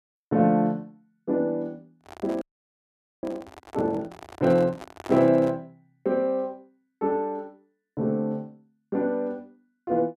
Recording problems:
handling noise; from 2 to 5.5 s; peak -8 dB vs average level
audio freezing; at 2.5 s for 1 s

